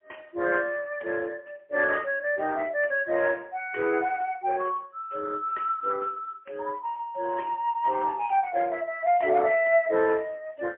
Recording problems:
telephone audio; 260 Hz to 3 kHz, AMR-NB, then MP3

